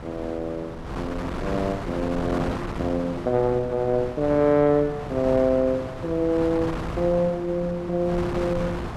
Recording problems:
wind noise; below 950 Hz, SNR 9 dB

